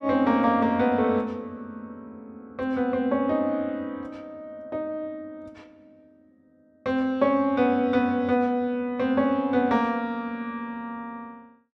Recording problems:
none

